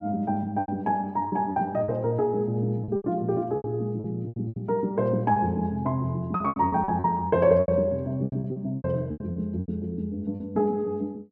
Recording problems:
lost packets; 13% of the sound replaced, filled with repeated pitch periods

